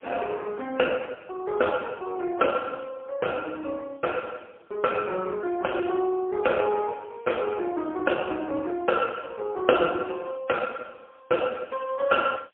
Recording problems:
telephone audio; 260 Hz to 2.5 kHz, AMR-NB, then MP3
background hiss; SNR 41 dB

